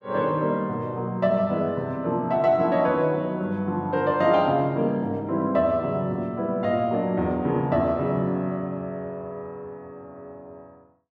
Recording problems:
none

